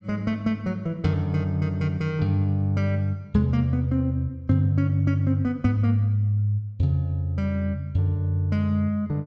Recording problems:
none

